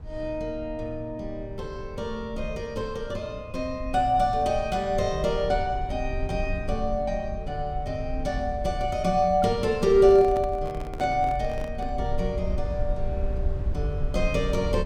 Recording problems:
low-frequency rumble; below 70 Hz, SNR 9 dB
microphone handling noise; from 10 to 12 s; peak -7 dB vs average level

